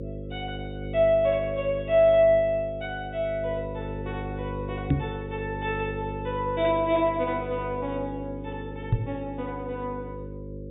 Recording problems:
treble cut off; nothing above 4 kHz
hum; 50 Hz, harmonics up to 550 Hz, SNR 9 dB
knock on the microphone; at 5 s and at 9 s; peak +7 dB vs average level

